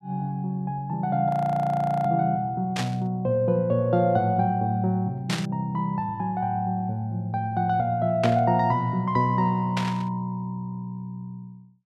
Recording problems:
audio freezing; at 1.5 s for 1 s
burst of static; 4 times, first at 3 s; peak 0 dB vs average level

